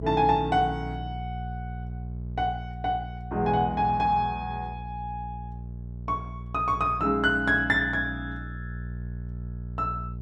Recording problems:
mains hum; 60 Hz, harmonics up to 420 Hz, SNR 10 dB

